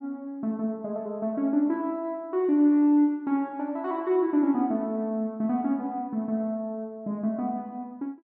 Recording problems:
none

